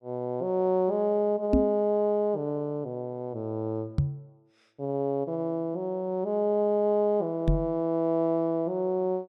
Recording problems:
microphone bump; at 1.5 s, at 4 s and at 7.5 s; peak +7 dB vs average level

